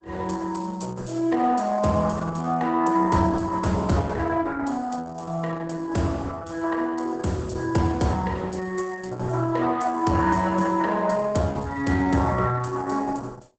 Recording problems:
lossy codec; Opus, log-spectral distance 4 dB, nothing above 8 kHz

